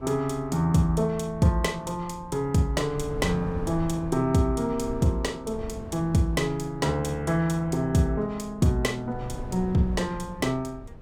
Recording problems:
wind noise; below 200 Hz, SNR 15 dB

